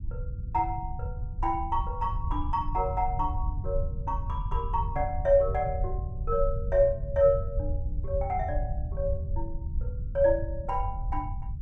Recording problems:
low-frequency rumble; below 82 Hz, SNR 5 dB

